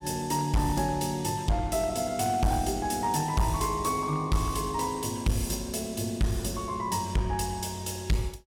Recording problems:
distorted audio; hard clipping, uneven, signal-to-distortion ratio 7 dB

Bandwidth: 16.5 kHz